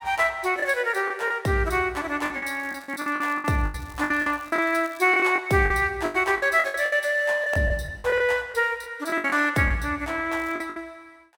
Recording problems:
packet loss; 13% of the sound replaced, filled with the last packet
crackle; from 2.5 to 5 s and at 10 s; loose cable, SNR 27 dB

